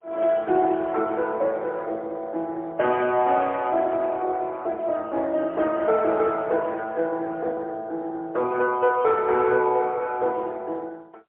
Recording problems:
telephone audio; 300 Hz to 3.6 kHz, AMR-NB, then MP3

